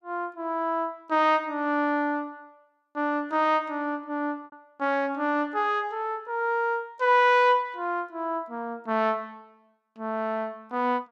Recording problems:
lost packets; 0.8% of the sound replaced, filled with repeated pitch periods

